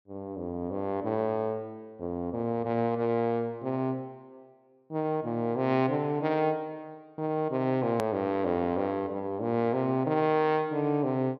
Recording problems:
low-pass filter; nothing above 6.2 kHz
hard cut with a click; at 8 s

